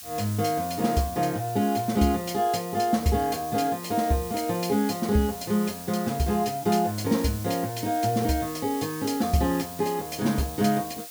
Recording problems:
background hiss; slope +3 dB per octave, SNR 13 dB

